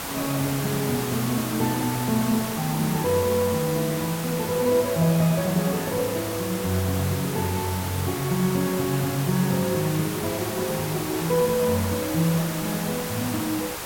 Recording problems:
hiss; slope -3 dB per octave, SNR 6 dB

